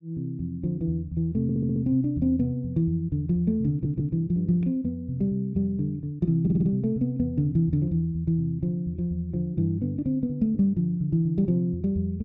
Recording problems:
audio stuttering; at 1.5 s, at 3.5 s and at 6.5 s

